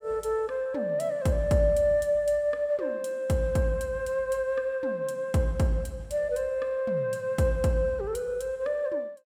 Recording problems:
none

